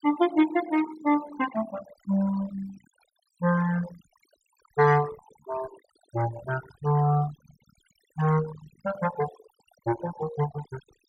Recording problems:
noise reduction artefacts; signal-to-artefact ratio 15 dB

